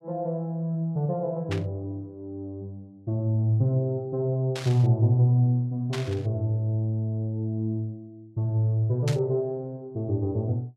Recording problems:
burst of static; 4 times, first at 1.5 s; peak -4 dB vs average level

